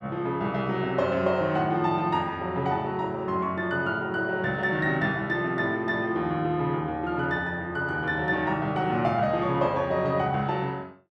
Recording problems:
none

